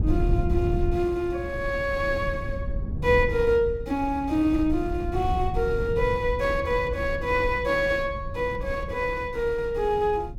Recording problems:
wind noise; below 110 Hz, SNR 7 dB

